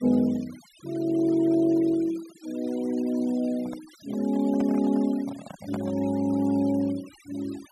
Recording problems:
noise reduction artefacts; signal-to-artefact ratio 22 dB
handling noise; from 3.5 to 6 s; peak -5 dB vs average level

